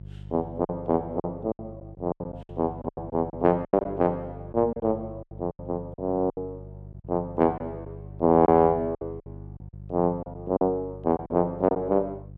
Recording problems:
hum; 50 Hz, harmonics up to 400 Hz, SNR 16 dB
packet loss; 12% of the sound replaced, filled with silence

